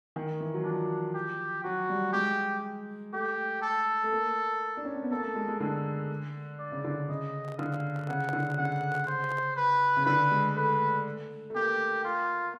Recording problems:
handling noise; from 7.5 to 9.5 s; peak -8 dB vs average level

